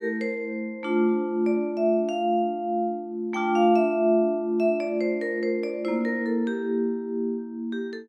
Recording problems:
none

